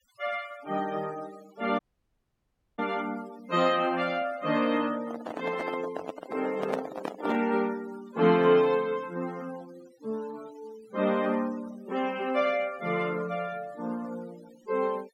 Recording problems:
noise reduction artefacts; signal-to-artefact ratio 20 dB
dropout; at 2 s for 1 s
handling noise; from 5 to 7.5 s; peak +1 dB vs average level

